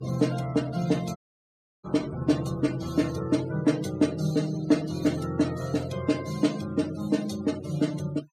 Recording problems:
denoising artefacts; signal-to-artefact ratio 18 dB
dropout; at 1 s for 0.5 s

